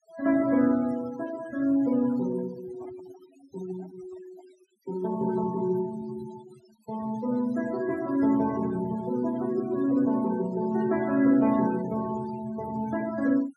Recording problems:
denoising artefacts; signal-to-artefact ratio 18 dB
handling noise; from 2.5 to 4.5 s; peak -17 dB vs average level

